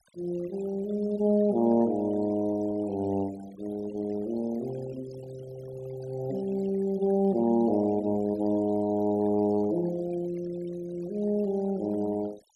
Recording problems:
noise reduction artefacts; signal-to-artefact ratio 22 dB

